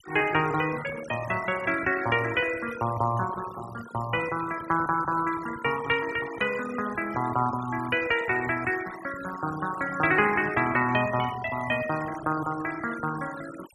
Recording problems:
denoising artefacts; signal-to-artefact ratio 13 dB

